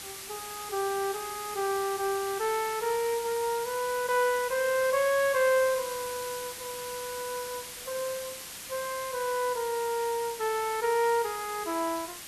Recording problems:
background hiss; slope +1 dB per octave, SNR 9 dB

